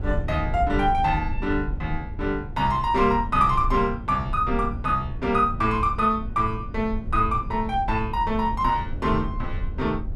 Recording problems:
rumble; below 88 Hz, SNR 9 dB

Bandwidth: 14.5 kHz